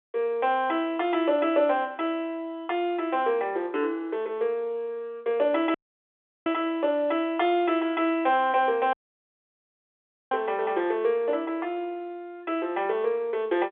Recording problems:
phone line; 280 Hz to 3.6 kHz, G.711
dropout; at 6 s for 0.5 s and at 9 s for 1.5 s

